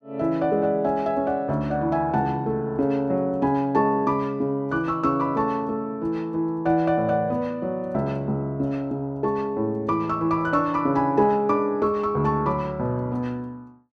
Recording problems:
none

